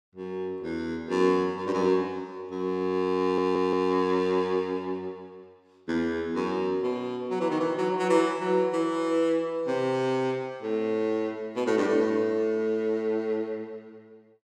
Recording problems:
stutter; at 3 s

